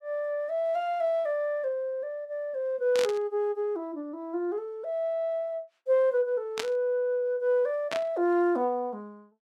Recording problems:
burst of static; at 3 s, at 6.5 s and at 8 s; peak 0 dB vs average level

